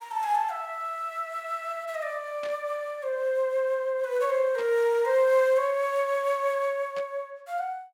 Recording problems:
burst of static; at 2.5 s, at 4.5 s and at 7 s; peak -11 dB vs average level

